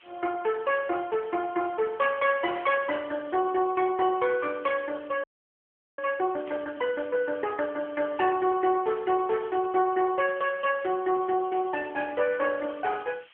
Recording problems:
phone line; 300 Hz to 3.3 kHz, AMR-NB
hiss; SNR 26 dB
static burst; at 2.5 s, at 6.5 s and at 12 s; peak -12 dB vs average level
frozen audio; at 5 s for 0.5 s

